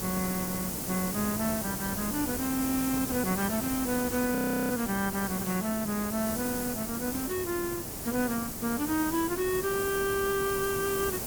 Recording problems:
background hiss; SNR 3 dB
wind on the microphone; below 560 Hz, SNR 21 dB
audio freezing; at 4.5 s

